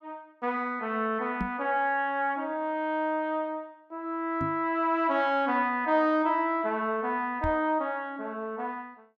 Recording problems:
microphone bump; at 1.5 s, at 4.5 s and at 7.5 s; peak 0 dB vs average level

